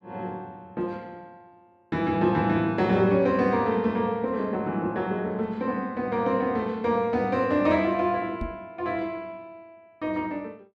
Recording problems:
microphone thump; at 8.5 s; peak -3 dB vs average level

